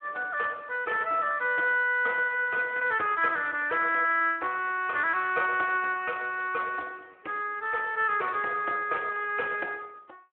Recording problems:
telephone audio; 300 Hz to 3.3 kHz, Speex

